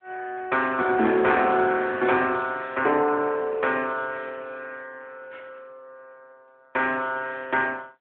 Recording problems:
telephone audio; 240 Hz to 3.5 kHz, AMR-NB

